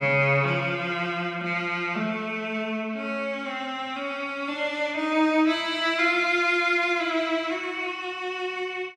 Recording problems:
none

